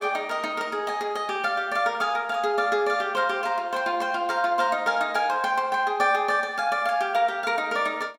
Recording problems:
none

